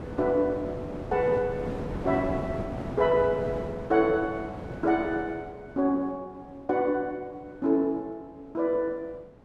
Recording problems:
wind on the microphone; below 540 Hz, SNR 9 dB

